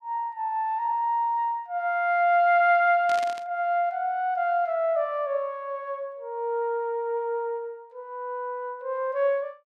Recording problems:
burst of static; at 3 s; peak -8 dB vs average level

